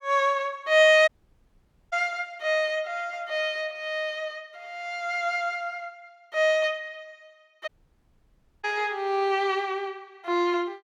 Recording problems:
audio cutting out; at 1 s for 1 s and at 7.5 s for 1 s

